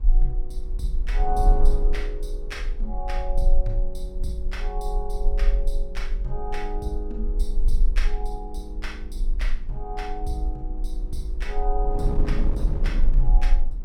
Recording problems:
rumble; below 36 Hz, strongest tone 22 Hz, SNR -6 dB
wind on the microphone; below 160 Hz, SNR 4 dB

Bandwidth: 16.5 kHz